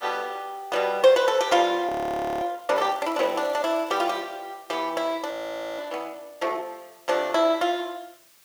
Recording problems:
background hiss; slope +1 dB per octave, SNR 28 dB
audio freezing; at 2 s for 0.5 s and at 5.5 s
crackling; from 3 to 4 s; loose cable, SNR 25 dB

